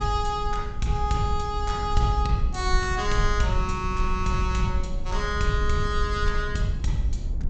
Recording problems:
treble cut off; nothing above 8 kHz
low-frequency rumble; below 62 Hz, strongest tone 22 Hz, SNR 4 dB

